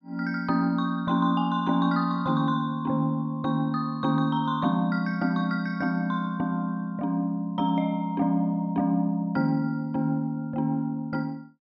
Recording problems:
none

